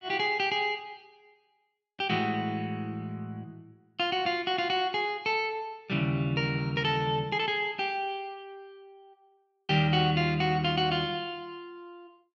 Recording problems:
none

